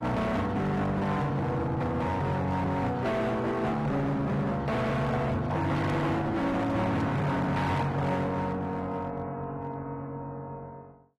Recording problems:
lossy codec; AAC, log-spectral distance 2 dB, nothing above 13.1 kHz
distorted audio; hard clipping, uneven, signal-to-distortion ratio 7 dB

